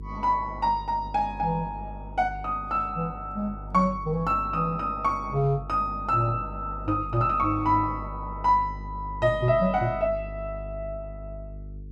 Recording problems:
hum; 50 Hz, harmonics up to 450 Hz, SNR 13 dB

